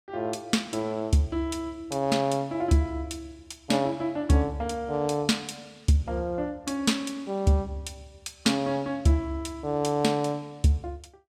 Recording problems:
none

